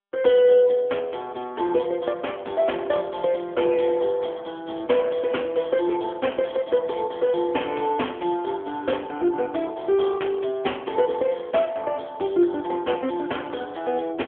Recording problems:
phone line; 260 Hz to 3.4 kHz, AMR-NB

